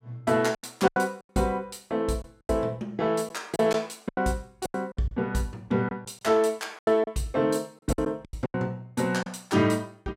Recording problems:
lost packets; 10% of the sound replaced, filled with silence

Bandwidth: 16.5 kHz